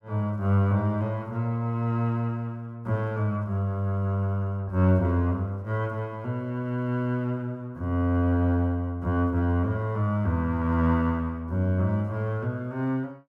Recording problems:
none

